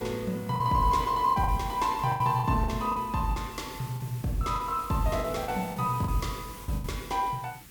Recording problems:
background hiss; SNR 17 dB
packet loss; 9% of the sound replaced, filled with the last packet

